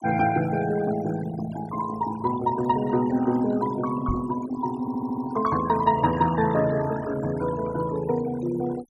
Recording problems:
noise reduction artefacts; signal-to-artefact ratio 14 dB
microphone thump; at 4 s; peak -1 dB vs average level
audio stuttering; at 5 s

